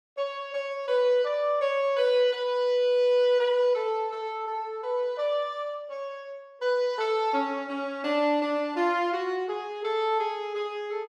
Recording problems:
none

